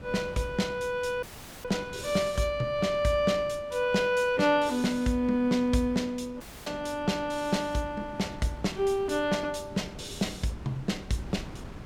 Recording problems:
wind noise; below 400 Hz, SNR 18 dB
dropout; at 1 s and at 6.5 s

